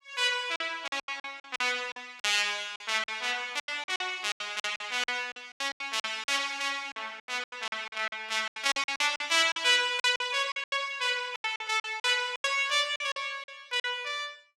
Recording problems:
packet loss; 16% of the sound replaced, filled with silence

